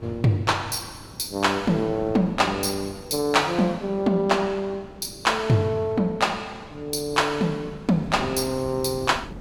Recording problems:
wind on the microphone; below 360 Hz, SNR 18 dB

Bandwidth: 18 kHz